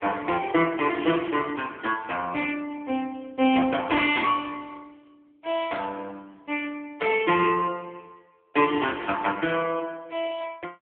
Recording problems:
phone line; 190 Hz to 3.5 kHz, AMR-NB

